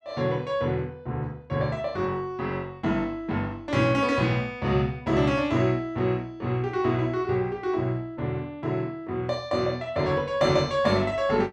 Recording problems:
none

